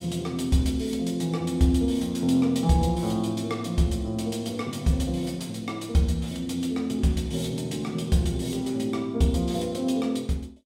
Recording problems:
none

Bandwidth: 16 kHz